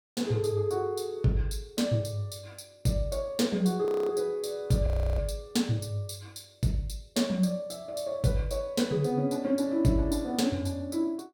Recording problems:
audio freezing; at 4 s and at 5 s

